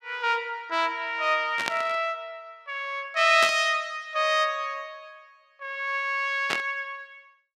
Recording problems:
static burst; at 1.5 s, at 3.5 s and at 6.5 s; peak +2 dB vs average level

